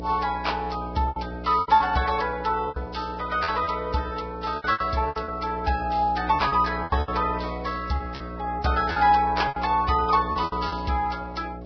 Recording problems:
codec artefacts; Vorbis, log-spectral distance 4 dB, nothing above 5.3 kHz
electrical hum; 60 Hz, harmonics up to 720 Hz, SNR 11 dB
packet loss; 11% of the sound replaced, filled with repeated pitch periods

